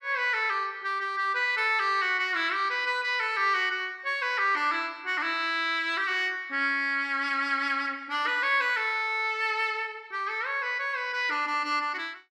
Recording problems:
none

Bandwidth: 14.5 kHz